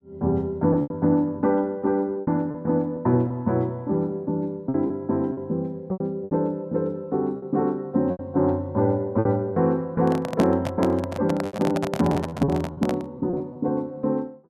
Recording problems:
packet loss; 8% of the sound replaced, filled with repeated pitch periods
handling noise; from 10 to 13 s; peak +1 dB vs average level

